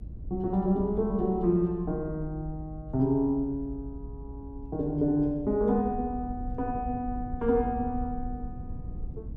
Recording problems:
low-frequency rumble; below 86 Hz, SNR 12 dB

